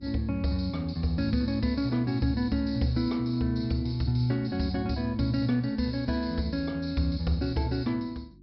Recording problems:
low-pass filter; nothing above 5.6 kHz
hum; 50 Hz, harmonics up to 350 Hz, SNR 26 dB

